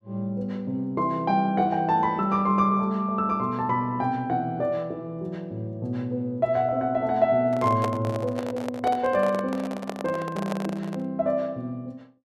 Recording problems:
microphone handling noise; from 7.5 to 11 s; peak 0 dB vs average level

